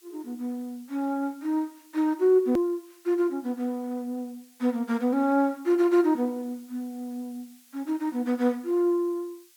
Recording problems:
hiss; slope +5 dB per octave, SNR 28 dB
click at an edit; at 2.5 s

